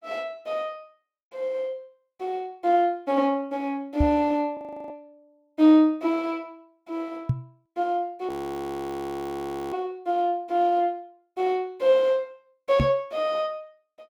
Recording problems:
knock on the microphone; at 4 s, at 7.5 s and at 13 s; peak +5 dB vs average level
audio freezing; at 4.5 s and at 8.5 s for 1.5 s

